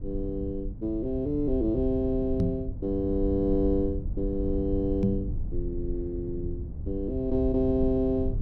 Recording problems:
low-frequency rumble; below 92 Hz, SNR 6 dB
microphone thump; at 2.5 s and at 5 s; peak +7 dB vs average level

